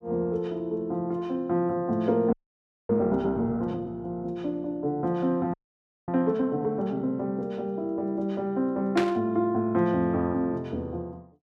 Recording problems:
audio freezing; at 2.5 s for 0.5 s and at 5.5 s for 0.5 s
static burst; at 9 s; peak +1 dB vs average level

